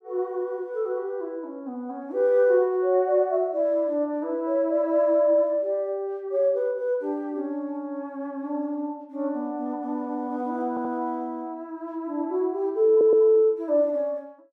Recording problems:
audio stuttering; at 11 s and at 13 s

